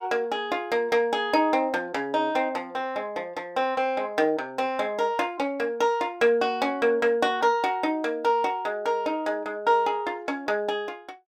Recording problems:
none

